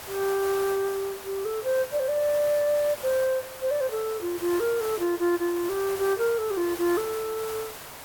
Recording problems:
hiss; SNR 11 dB

